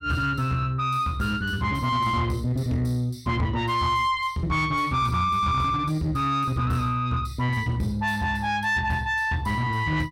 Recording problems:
distorted audio; soft clipping, signal-to-distortion ratio 11 dB

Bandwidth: 16 kHz